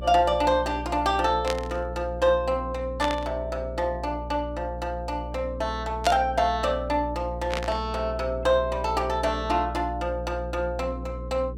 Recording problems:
electrical hum; 60 Hz, harmonics up to 480 Hz, SNR 10 dB
burst of static; 4 times, first at 1.5 s; peak +2 dB vs average level

